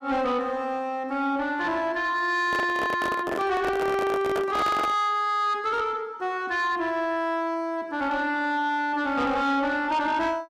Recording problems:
distorted audio; soft clipping, signal-to-distortion ratio 11 dB
handling noise; from 2.5 to 5 s; peak 0 dB vs average level

